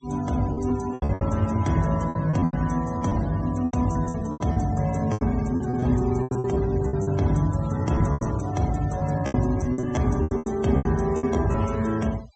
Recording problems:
treble cut off; nothing above 8 kHz
denoising artefacts; signal-to-artefact ratio 20 dB
lost packets; 15% of the sound replaced, filled with repeated pitch periods

